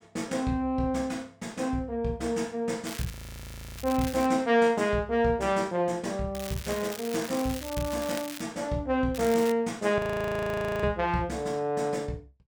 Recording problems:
crackle; from 3 to 4.5 s, from 6.5 to 8.5 s and at 9 s; loose cable, SNR 12 dB
frozen audio; at 3 s for 0.5 s and at 10 s for 1 s

